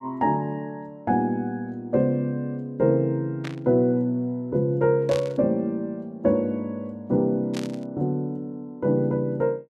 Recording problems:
burst of static; at 3.5 s, at 5 s and at 7.5 s; peak -8 dB vs average level

